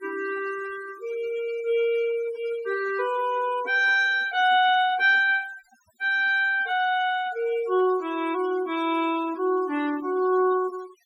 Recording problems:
noise reduction artefacts; signal-to-artefact ratio 19 dB

